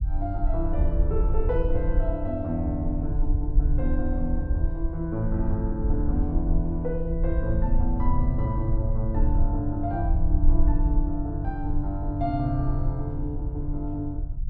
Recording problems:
low-frequency rumble; below 58 Hz, strongest tone 22 Hz, SNR -1 dB

